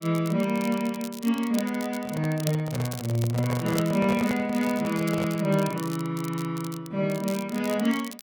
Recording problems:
crackle; vinyl, SNR 15 dB
microphone handling noise; from 2 to 5.5 s; peak -2 dB vs average level

